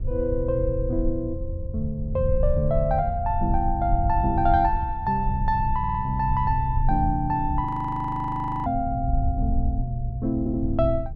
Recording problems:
rumble; below 76 Hz, SNR 5 dB
stutter; at 6 s and at 10 s
frozen audio; at 7.5 s for 1 s

